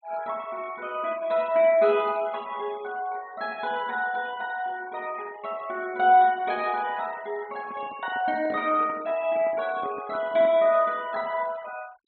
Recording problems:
treble missing; nothing above 4.2 kHz
denoising artefacts; signal-to-artefact ratio 24 dB
handling noise; from 7.5 to 11 s; peak -11 dB vs average level

